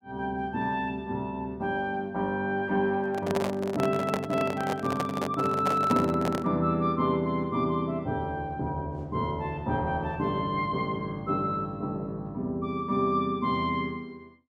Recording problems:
handling noise; from 3 to 6.5 s; peak +3 dB vs average level

